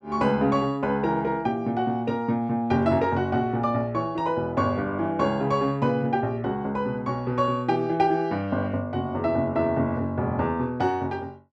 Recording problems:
none

